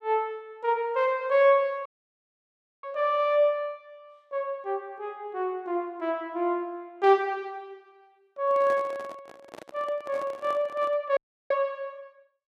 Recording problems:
dropout; at 2 s for 1 s and at 11 s
handling noise; from 8.5 to 11 s; peak -10 dB vs average level

